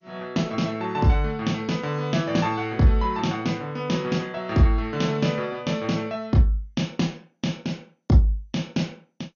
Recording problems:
lossy compression; MP2, log-spectral distance 2 dB, nothing above 6.5 kHz

